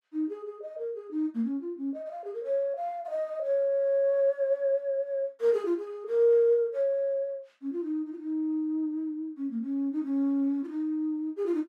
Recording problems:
none

